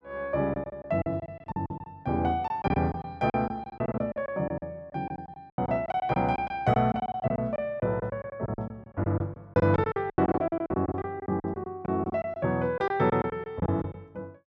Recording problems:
packet loss; 17% of the sound replaced, filled with silence

